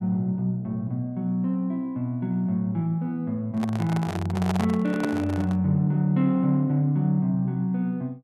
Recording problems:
handling noise; from 3.5 to 5.5 s; peak -1 dB vs average level

